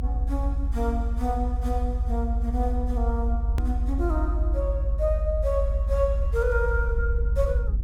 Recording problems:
low-frequency rumble; below 68 Hz, strongest tone 50 Hz, SNR -3 dB
hard cut with a click; at 3.5 s

